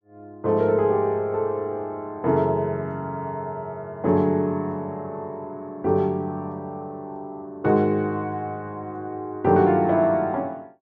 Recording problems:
treble missing; nothing above 7.5 kHz

